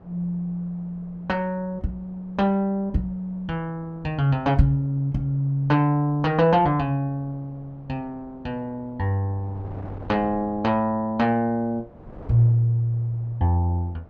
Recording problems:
wind on the microphone; below 540 Hz, SNR 23 dB

